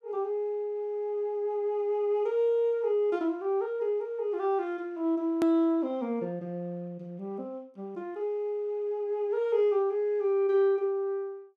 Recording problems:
click at an edit; at 5.5 s

